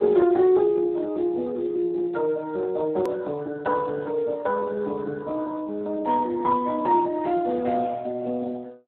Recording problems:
telephone audio; 190 Hz to 2.1 kHz, Speex
hard cut with a click; at 3 s

